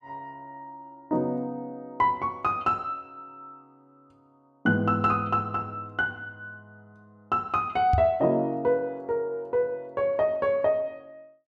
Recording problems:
microphone thump; at 8 s; peak +4 dB vs average level

